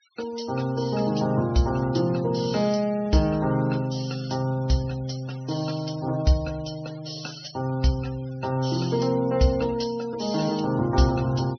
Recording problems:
treble missing; nothing above 6.1 kHz
noise reduction artefacts; signal-to-artefact ratio 20 dB

